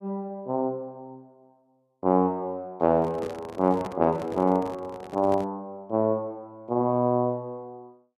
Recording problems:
microphone handling noise; from 3 to 5.5 s; peak -7 dB vs average level

